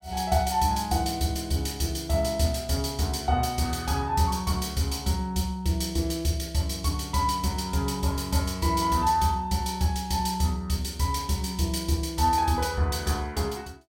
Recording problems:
none

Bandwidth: 16.5 kHz